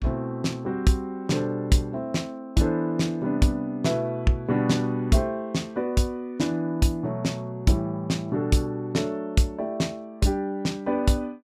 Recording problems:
none

